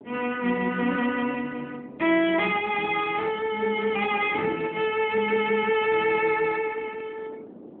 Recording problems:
telephone audio; 190 Hz to 3.4 kHz, AMR-NB
wind on the microphone; below 450 Hz, SNR 18 dB

